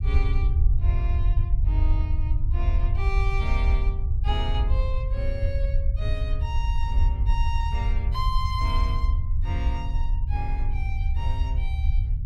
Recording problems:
low-frequency rumble; below 72 Hz, SNR -10 dB

